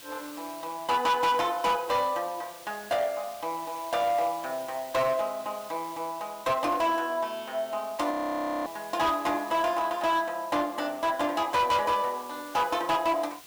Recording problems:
distortion; hard clipping, signal-to-distortion ratio 10 dB
hiss; slope +1 dB per octave, SNR 18 dB
frozen audio; at 8 s for 0.5 s

